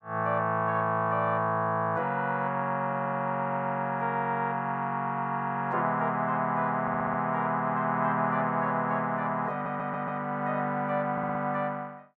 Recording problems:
stutter; 4 times, first at 3 s

